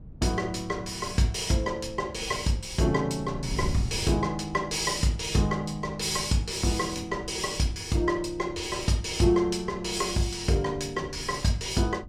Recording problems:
wind on the microphone; below 140 Hz, SNR 15 dB

